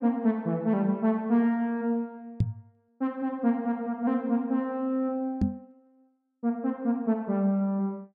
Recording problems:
knock on the microphone; at 2.5 s and at 5.5 s; peak +7 dB vs average level

